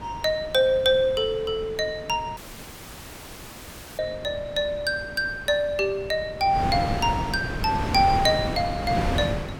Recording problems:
wind noise; below 690 Hz, SNR 8 dB
audio cutting out; at 2.5 s for 1.5 s

